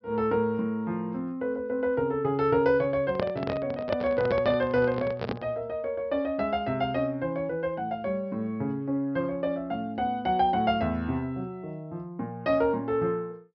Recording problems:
low-pass filter; nothing above 5.5 kHz
microphone handling noise; from 3 to 5.5 s; peak +1 dB vs average level

